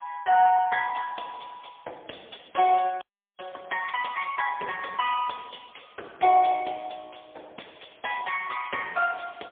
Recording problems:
phone line; 320 Hz to 3.3 kHz, AMR-NB, then MP3
frozen audio; at 3 s

